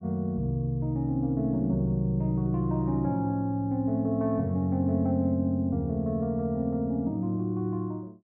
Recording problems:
none

